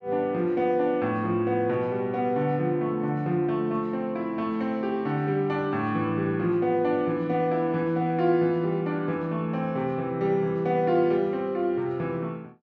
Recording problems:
none

